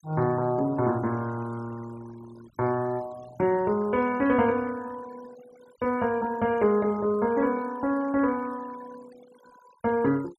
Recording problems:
denoising artefacts; signal-to-artefact ratio 21 dB

